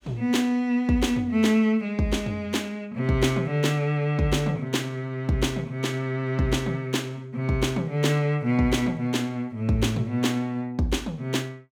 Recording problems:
none

